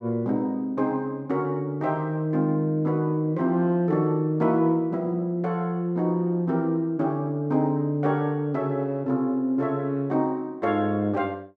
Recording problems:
none

